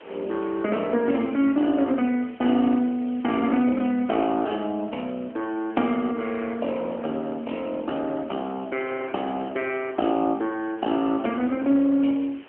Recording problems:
phone line; 240 Hz to 3.3 kHz, AMR-NB
hiss; SNR 27 dB
wind noise; below 1.1 kHz, SNR 20 dB

